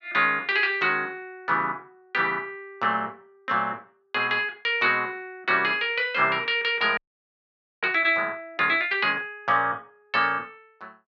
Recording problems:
audio freezing; at 7 s for 1 s

